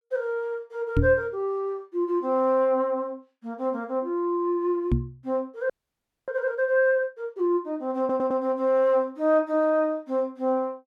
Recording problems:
microphone bump; at 1 s and at 5 s; peak +6 dB vs average level
audio freezing; at 5.5 s for 0.5 s
audio stuttering; at 8 s

